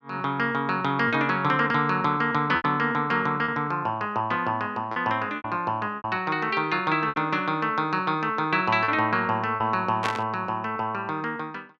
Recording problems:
lost packets; 4% of the sound replaced, filled with repeated pitch periods
static burst; at 10 s; peak 0 dB vs average level

